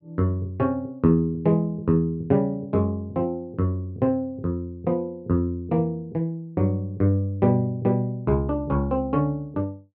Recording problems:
none

